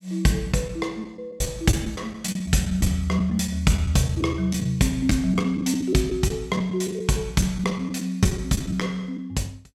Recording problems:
lost packets; 7% of the sound replaced, filled with the last packet

